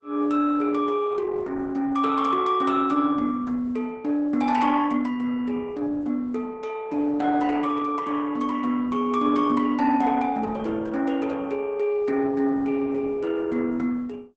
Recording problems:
codec artefacts; Opus, log-spectral distance 3 dB, nothing above 8.2 kHz

